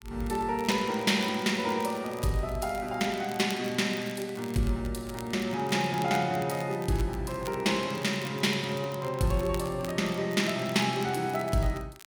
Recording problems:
crackle; vinyl, SNR 19 dB

